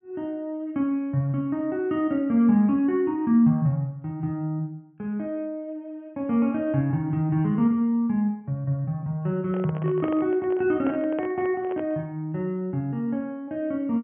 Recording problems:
treble missing; nothing above 3.2 kHz
handling noise; from 9.5 to 12 s; peak -4 dB vs average level

